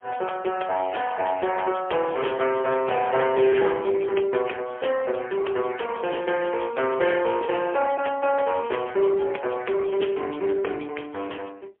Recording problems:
telephone audio; 300 Hz to 3.3 kHz, AMR-NB, then MP3

